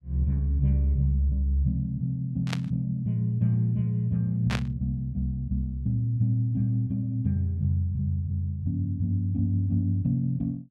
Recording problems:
static burst; at 2.5 s and at 4.5 s; peak -1 dB vs average level

